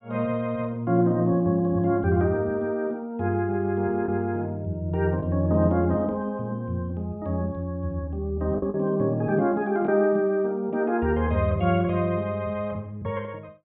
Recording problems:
treble cut off; nothing above 4 kHz
lost packets; 1% of the sound replaced, filled with the last packet

